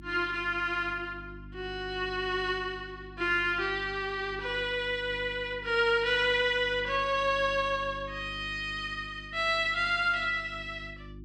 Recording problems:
hum; 50 Hz, harmonics up to 350 Hz, SNR 18 dB

